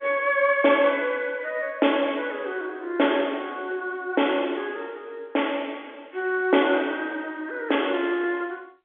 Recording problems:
phone line; 300 Hz to 3.4 kHz, G.711

